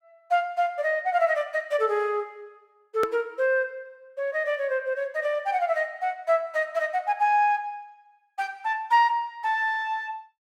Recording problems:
hard cut with a click; at 3 s

